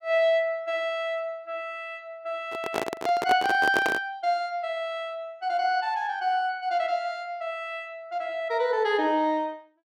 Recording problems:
microphone handling noise; from 2.5 to 4 s; peak +3 dB vs average level

